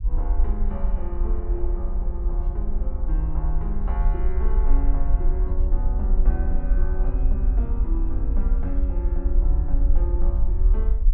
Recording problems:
rumble; below 48 Hz, SNR -10 dB

